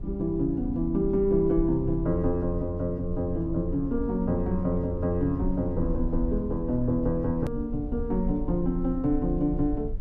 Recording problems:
hum; 60 Hz, harmonics up to 600 Hz, SNR 20 dB
low-frequency rumble; below 58 Hz, SNR 9 dB
click at an edit; at 7.5 s

